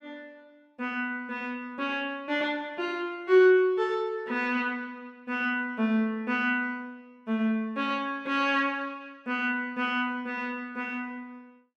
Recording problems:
none

